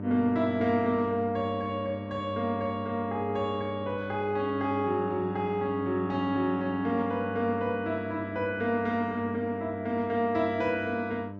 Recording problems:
hum; 50 Hz, harmonics up to 1.3 kHz, SNR 9 dB

